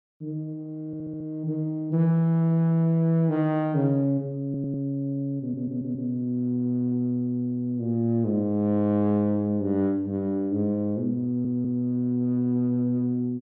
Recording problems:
audio stuttering; 4 times, first at 1 s

